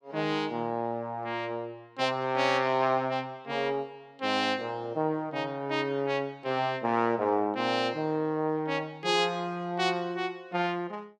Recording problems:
none

